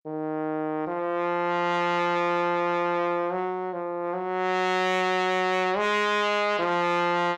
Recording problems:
distorted audio; soft clipping, signal-to-distortion ratio 10 dB

